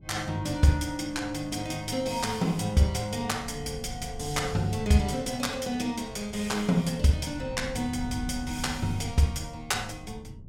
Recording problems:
wind on the microphone; below 140 Hz, SNR 14 dB

